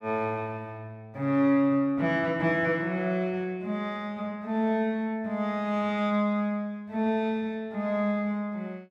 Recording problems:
none

